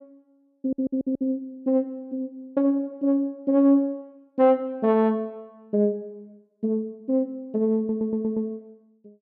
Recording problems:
stutter; at 0.5 s and at 8 s

